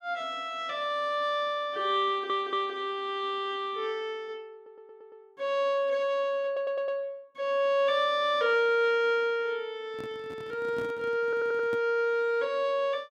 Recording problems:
stutter; 4 times, first at 2 s
handling noise; from 10 to 12 s; peak -8 dB vs average level

